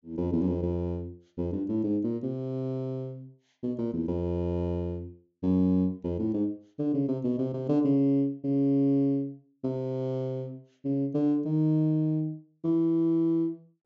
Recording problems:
treble missing; nothing above 8 kHz

